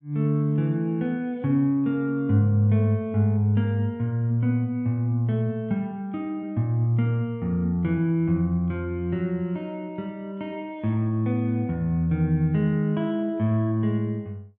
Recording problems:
none

